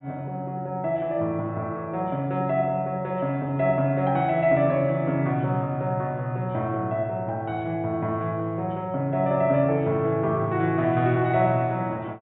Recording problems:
treble missing; nothing above 3.9 kHz

